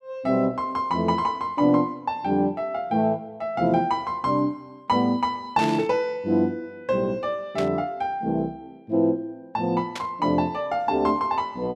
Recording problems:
burst of static; at 5.5 s, at 7.5 s and at 10 s; peak -4 dB vs average level

